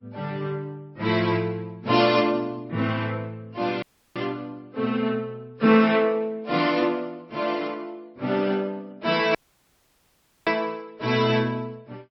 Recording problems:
lossy codec; MP3, then Vorbis, log-spectral distance 2 dB, nothing above 5.3 kHz
dropout; at 4 s and at 9.5 s for 1 s

